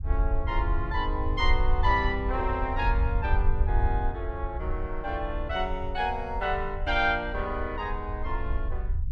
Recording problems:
rumble; below 62 Hz, SNR 2 dB

